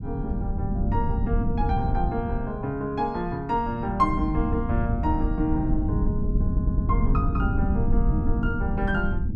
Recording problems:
low-frequency rumble; below 140 Hz, SNR -1 dB
stutter; at 6.5 s

